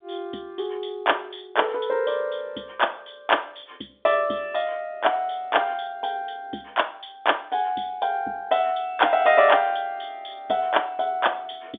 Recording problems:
phone line; 240 Hz to 3.6 kHz, G.711

